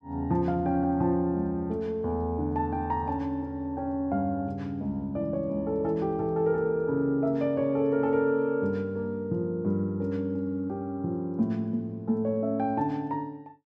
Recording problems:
none

